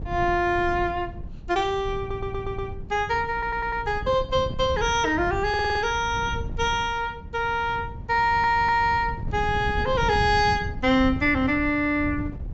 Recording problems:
treble missing; nothing above 8 kHz
wind on the microphone; below 140 Hz, SNR 11 dB
stutter; 4 times, first at 2 s

